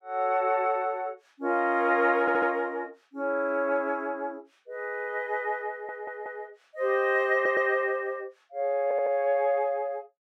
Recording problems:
stutter; 4 times, first at 2 s

